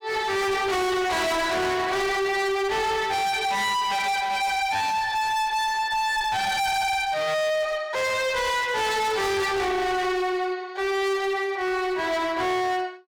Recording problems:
distortion; hard clipping, signal-to-distortion ratio 6 dB

